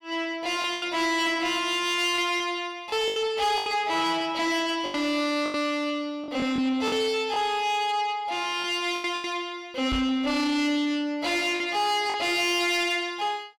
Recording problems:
distortion; soft clipping, signal-to-distortion ratio 12 dB
packet loss; 7% of the sound replaced, filled with the last packet
microphone bump; at 10 s; peak -3 dB vs average level

